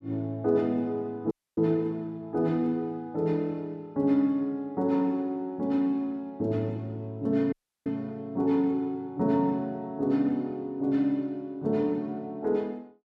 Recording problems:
dropout; at 1.5 s and at 7.5 s

